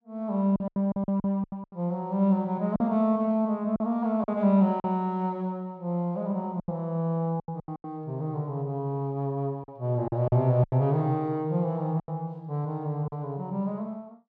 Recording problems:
lost packets; 9% of the sound replaced, filled with silence

